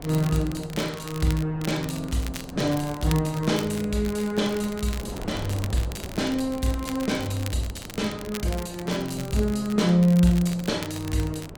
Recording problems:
wind on the microphone; below 470 Hz, SNR 15 dB
crackling; vinyl, SNR 15 dB

